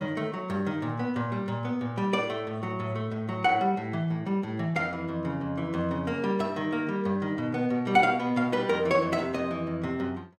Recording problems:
none

